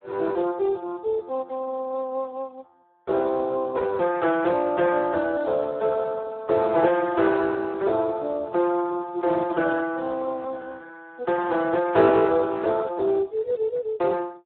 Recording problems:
phone line; 320 Hz to 2 kHz, Speex

